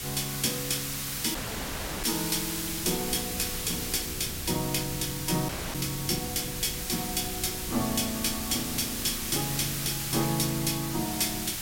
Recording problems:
background hiss; slope +3 dB per octave, SNR 2 dB
wind on the microphone; below 230 Hz, SNR 13 dB
dropout; at 1.5 s for 0.5 s and at 5.5 s

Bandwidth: 16.5 kHz